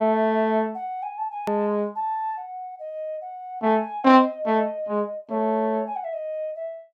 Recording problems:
click at an edit; at 1.5 s

